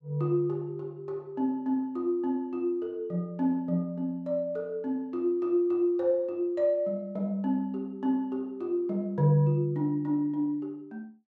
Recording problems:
none

